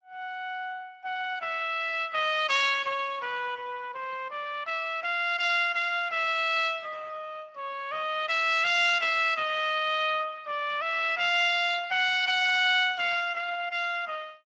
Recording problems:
codec artefacts; Speex, log-spectral distance 4 dB, nothing above 7.3 kHz

